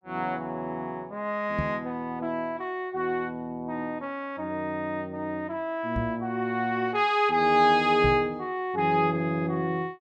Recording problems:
microphone thump; at 1.5 s, at 6 s and at 8 s; peak +1 dB vs average level

